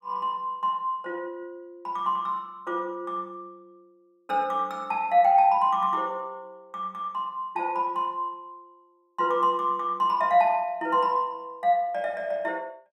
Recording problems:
none

